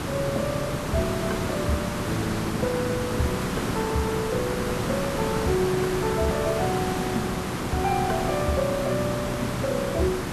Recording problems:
background hiss; slope -5 dB per octave, SNR 1 dB

